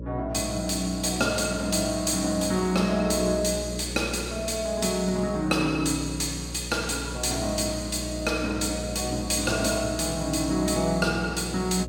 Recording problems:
electrical hum; 60 Hz, harmonics up to 600 Hz, SNR 11 dB

